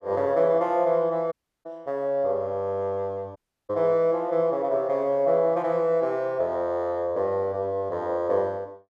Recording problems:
dropout; at 1.5 s and at 3.5 s

